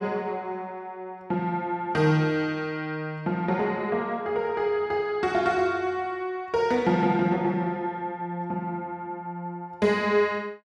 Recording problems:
none

